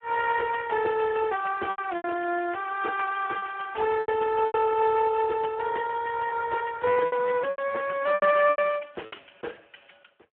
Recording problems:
phone line; 300 Hz to 2.9 kHz, Speex
packet loss; 8% of the sound replaced, filled with repeated pitch periods

